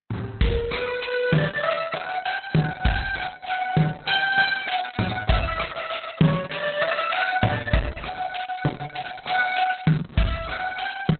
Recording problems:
lossy compression; Opus, log-spectral distance 7 dB, nothing above 4.1 kHz

